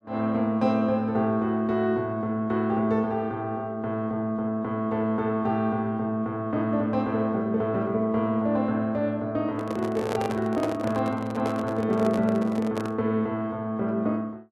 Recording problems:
handling noise; from 9.5 to 13 s; peak 0 dB vs average level

